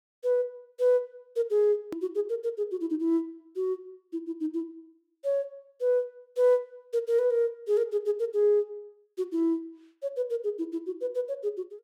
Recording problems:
click at an edit; at 2 s

